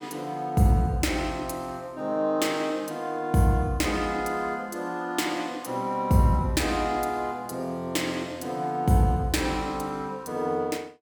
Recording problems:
none

